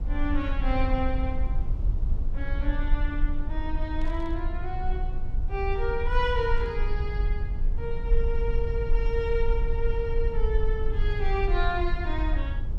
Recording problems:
rumble; below 52 Hz, SNR -2 dB
burst of static; at 4 s and at 6.5 s; peak -15 dB vs average level

